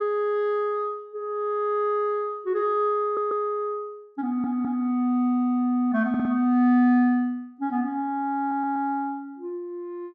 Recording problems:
stutter; 4 times, first at 3 s

